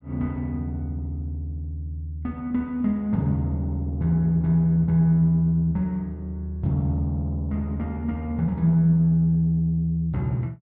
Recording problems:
none

